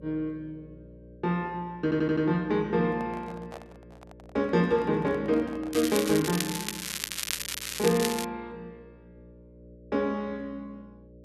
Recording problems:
hum; 60 Hz, harmonics up to 600 Hz, SNR 22 dB
audio stuttering; at 2 s
handling noise; from 3 to 6 s; peak -11 dB vs average level
crackling; from 5.5 to 8.5 s; loose cable, SNR 5 dB

